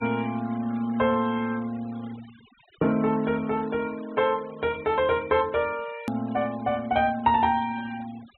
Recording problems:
treble missing; nothing above 3.9 kHz
noise reduction artefacts; signal-to-artefact ratio 22 dB
hard cut with a click; at 6 s

